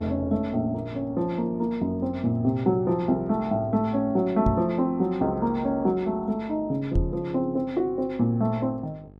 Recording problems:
electrical hum; 50 Hz, harmonics up to 900 Hz, SNR 23 dB
microphone bump; at 4.5 s and at 7 s; peak +4 dB vs average level

